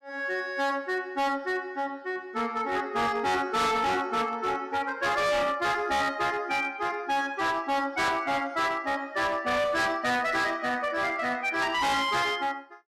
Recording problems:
distortion; hard clipping, signal-to-distortion ratio 8 dB

